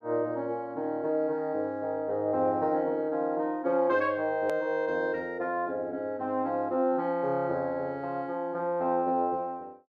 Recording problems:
edit click; at 4.5 s

